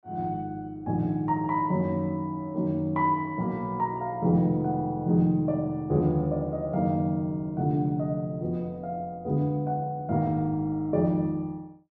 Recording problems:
none

